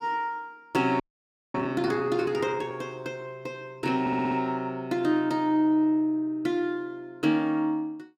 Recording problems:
frozen audio; at 1 s for 0.5 s
stutter; at 4 s

